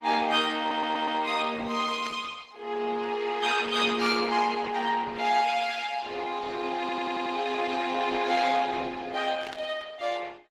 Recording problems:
lossy codec; Opus, log-spectral distance 5 dB, nothing above 18.3 kHz
stutter; at 0.5 s and at 7 s
burst of static; at 2 s, at 4 s and at 9.5 s; peak -8 dB vs average level

